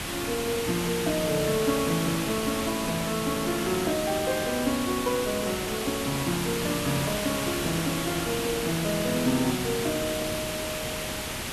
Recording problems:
hiss; slope -2 dB per octave, SNR 2 dB

